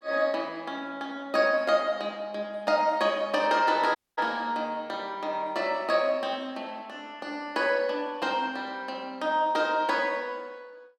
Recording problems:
audio cutting out; at 4 s

